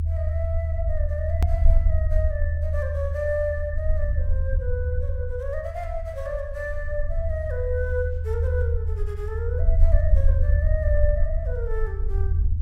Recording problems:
low-frequency rumble; below 78 Hz, SNR -6 dB
click at an edit; at 1.5 s

